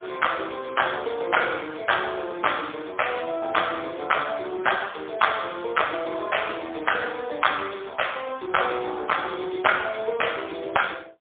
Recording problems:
phone line; 300 Hz to 3.4 kHz, AMR-NB, then MP3

